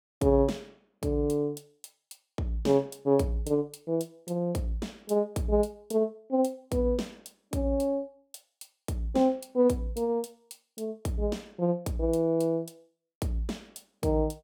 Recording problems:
none

